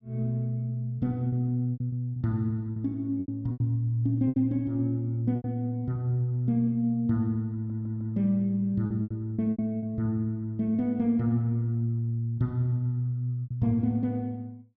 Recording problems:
packet loss; 7% of the sound replaced, filled with repeated pitch periods
stutter; at 7.5 s

